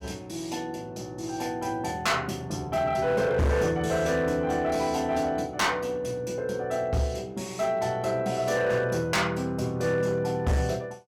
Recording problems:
distortion; hard clipping, signal-to-distortion ratio 11 dB

